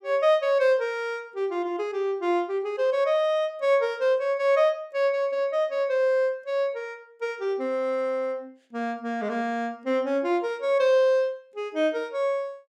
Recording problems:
none

